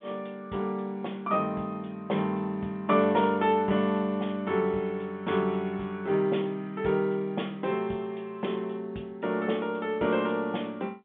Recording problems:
phone line; 150 Hz to 3.6 kHz, G.711

